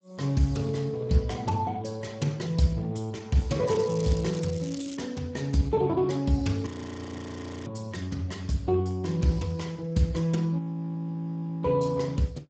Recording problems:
codec artefacts; Speex, log-spectral distance 4 dB, nothing above 7.6 kHz
crackling; from 3.5 to 5 s; loose cable, SNR 16 dB
frozen audio; at 6.5 s for 1 s and at 11 s for 1 s

